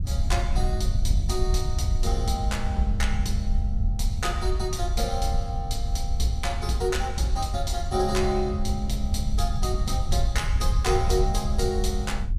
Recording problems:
wind noise; below 74 Hz, SNR -1 dB

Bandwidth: 15 kHz